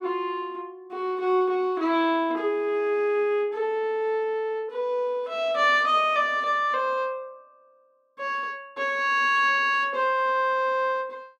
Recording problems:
none

